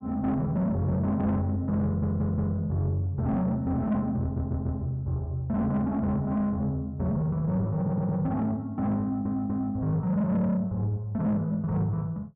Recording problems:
low-pass filter; nothing above 4 kHz
distorted audio; soft clipping, signal-to-distortion ratio 11 dB
audio stuttering; 4 times, first at 2 s

